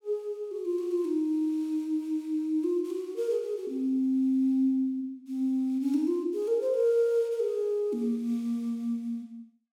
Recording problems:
none

